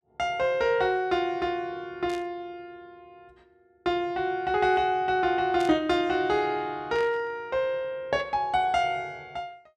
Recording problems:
static burst; at 2 s, at 5.5 s and at 7 s; peak -10 dB vs average level

